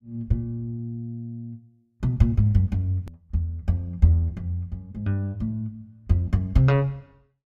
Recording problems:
hard cut with a click; at 3 s

